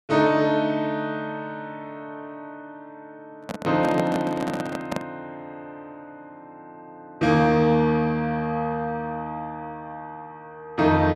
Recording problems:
handling noise; from 3.5 to 5 s; peak -1 dB vs average level

